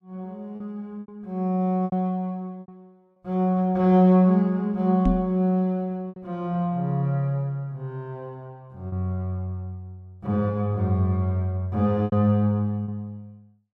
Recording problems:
lost packets; 4% of the sound replaced, filled with repeated pitch periods
microphone thump; at 5 s; peak +3 dB vs average level

